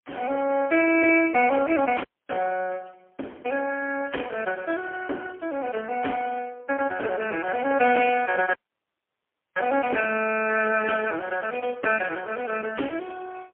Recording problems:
phone line; 240 Hz to 3.1 kHz, AMR-NB, then MP3
dropout; at 2 s and at 8.5 s for 1 s

